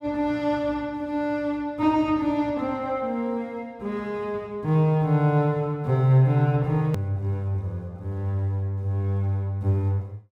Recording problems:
click at an edit; at 7 s

